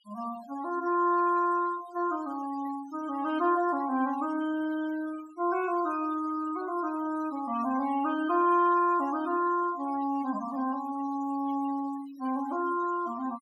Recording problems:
denoising artefacts; signal-to-artefact ratio 20 dB

